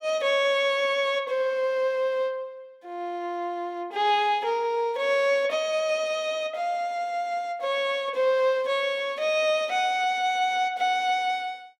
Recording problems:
none

